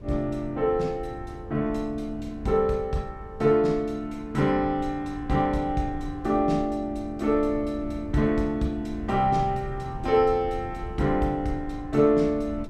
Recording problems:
wind on the microphone; below 140 Hz, SNR 15 dB

